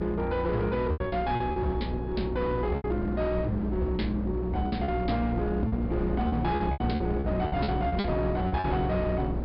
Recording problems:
low-pass filter; nothing above 5.2 kHz
distorted audio; hard clipping, signal-to-distortion ratio 11 dB
hum; 60 Hz, harmonics up to 360 Hz, SNR 5 dB
wind noise; below 440 Hz, SNR 8 dB
lost packets; 9% of the sound replaced, filled with repeated pitch periods

